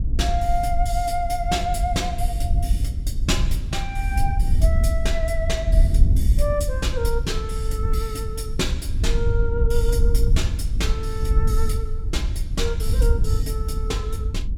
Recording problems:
wind on the microphone; below 70 Hz, SNR -4 dB

